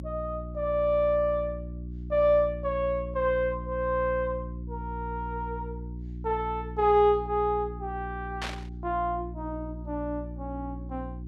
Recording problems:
hum; 60 Hz, harmonics up to 360 Hz, SNR 10 dB
static burst; at 8.5 s; peak -2 dB vs average level

